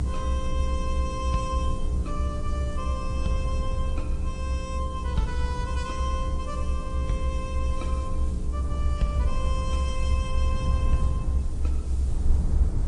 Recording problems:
lossy compression; MP3, then AAC, log-spectral distance 2 dB, nothing above 8.5 kHz
mains hum; 60 Hz, harmonics up to 480 Hz, SNR 4 dB
hiss; SNR 18 dB
low-frequency rumble; below 68 Hz, SNR -6 dB

